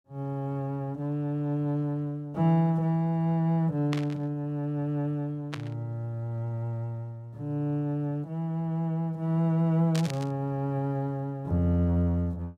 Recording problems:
burst of static; at 4 s, at 5.5 s and at 10 s; peak -3 dB vs average level

